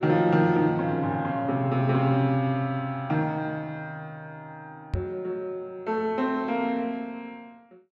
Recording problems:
microphone bump; at 5 s; peak +2 dB vs average level

